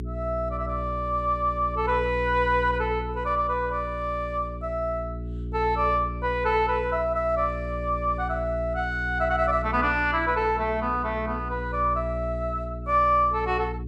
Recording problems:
hum; 60 Hz, harmonics up to 420 Hz, SNR 9 dB

